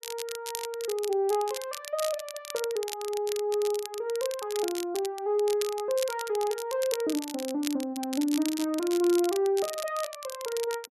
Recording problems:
crackling; vinyl, SNR 10 dB

